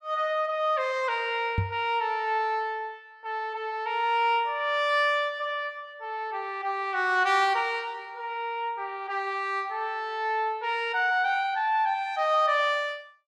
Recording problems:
knock on the microphone; at 1.5 s; peak +3 dB vs average level

